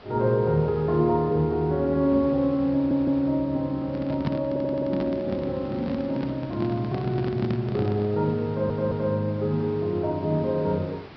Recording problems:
treble missing; nothing above 5.5 kHz
hiss; SNR 20 dB
audio stuttering; at 3 s, at 4.5 s and at 8.5 s
handling noise; from 4 to 8 s; peak +2 dB vs average level

